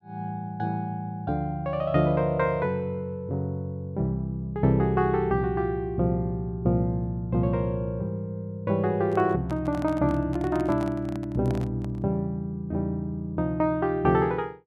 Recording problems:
microphone handling noise; from 9 to 12 s; peak -7 dB vs average level

